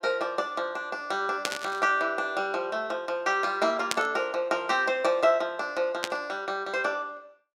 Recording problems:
burst of static; at 1.5 s, at 4 s and at 6 s; peak +5 dB vs average level

